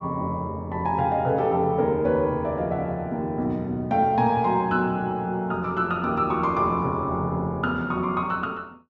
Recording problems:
none

